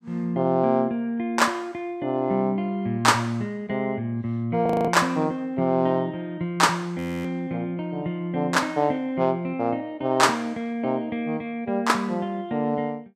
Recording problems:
audio freezing; at 4.5 s and at 7 s

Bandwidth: 15.5 kHz